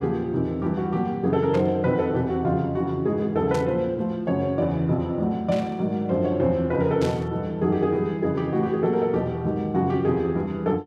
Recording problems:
burst of static; 4 times, first at 1.5 s; peak -9 dB vs average level

